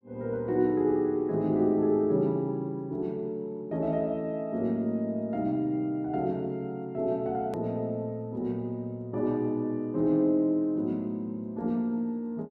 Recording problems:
edit click; at 7.5 s

